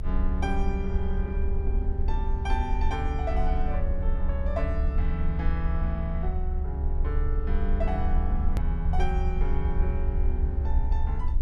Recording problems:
rumble; below 70 Hz, SNR -5 dB
edit click; at 8.5 s

